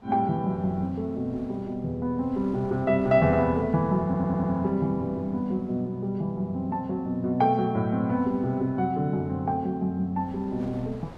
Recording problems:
wind noise; below 730 Hz, SNR 23 dB
stutter; at 4 s

